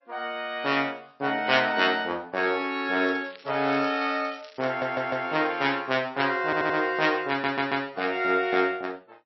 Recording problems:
lossy compression; MP3, log-spectral distance 3 dB, nothing above 5.7 kHz
crackle; from 3 to 5 s; loose cable, SNR 23 dB
stutter; at 4.5 s, at 6.5 s and at 7.5 s

